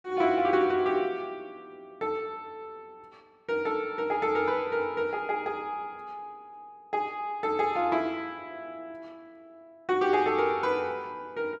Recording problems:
none

